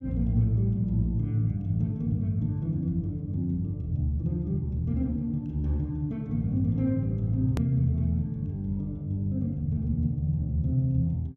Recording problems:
click at an edit; at 7.5 s

